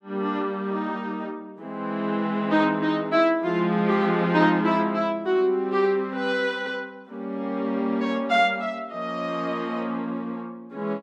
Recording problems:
none

